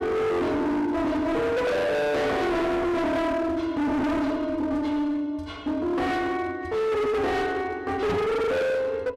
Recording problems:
distorted audio; hard clipping, signal-to-distortion ratio 6 dB
microphone bump; at 8 s; peak +1 dB vs average level

